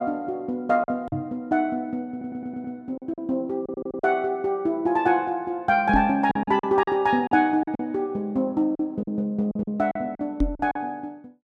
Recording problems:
packet loss; 8% of the sound replaced, filled with silence
microphone thump; at 1 s, at 6 s and at 10 s; peak +4 dB vs average level
stutter; at 2 s and at 3.5 s

